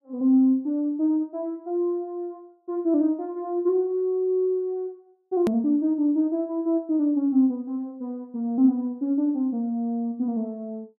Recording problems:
edit click; at 5.5 s

